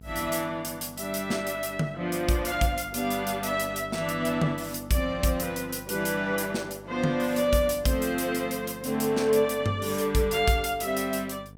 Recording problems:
hum; 50 Hz, harmonics up to 750 Hz, SNR 20 dB

